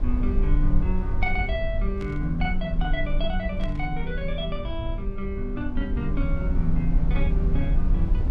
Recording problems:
rumble; below 52 Hz, strongest tone 20 Hz, SNR -1 dB
static burst; at 2 s and at 3.5 s; peak -10 dB vs average level

